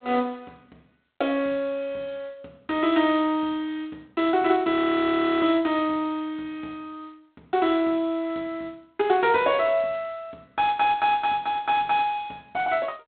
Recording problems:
phone line; 190 Hz to 3.8 kHz, G.726
frozen audio; at 4.5 s for 0.5 s

